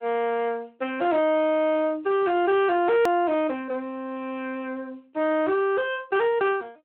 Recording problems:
phone line; 280 Hz to 2.5 kHz, Speex
distorted audio; soft clipping, signal-to-distortion ratio 12 dB
click at an edit; at 3 s

